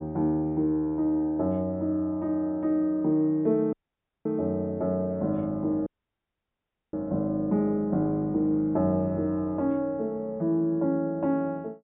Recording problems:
low-pass filter; nothing above 4 kHz
audio cutting out; at 3.5 s for 0.5 s and at 6 s for 1 s

